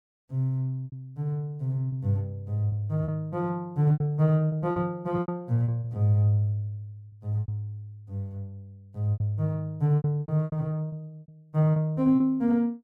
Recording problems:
packet loss; 10% of the sound replaced, filled with repeated pitch periods

